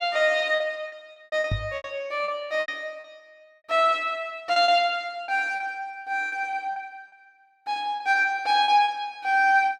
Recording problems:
lost packets; 9% of the sound replaced, filled with repeated pitch periods
microphone bump; at 1.5 s; peak 0 dB vs average level

